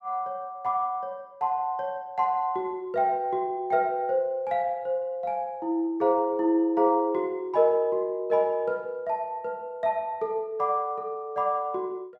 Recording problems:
none

